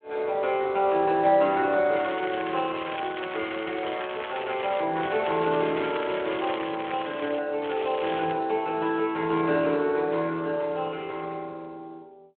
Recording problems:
telephone audio; 260 Hz to 3.7 kHz, Speex
crackling; from 2 to 5 s, from 5 to 7.5 s and at 7.5 s; loose cable, SNR 12 dB

